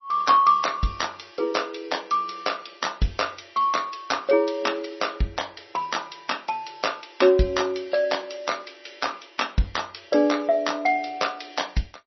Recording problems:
codec artefacts; MP3, log-spectral distance 7 dB, nothing above 5.8 kHz

